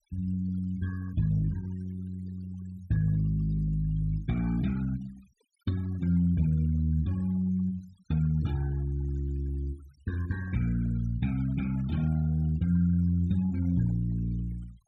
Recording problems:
noise reduction artefacts; signal-to-artefact ratio 24 dB

